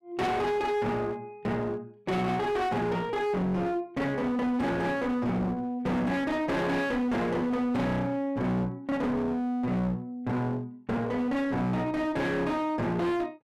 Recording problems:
distortion; hard clipping, uneven, signal-to-distortion ratio 6 dB

